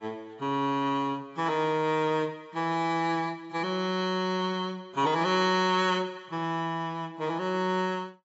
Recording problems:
lossy compression; AAC, log-spectral distance 2 dB, nothing above 7.6 kHz

